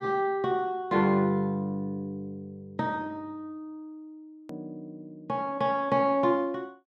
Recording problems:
hard cut with a click; at 4.5 s

